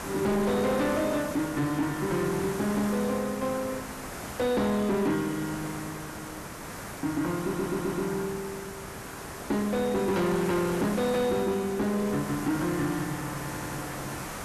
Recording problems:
distorted audio; hard clipping, signal-to-distortion ratio 11 dB
background hiss; SNR 9 dB
stutter; at 7.5 s and at 13 s

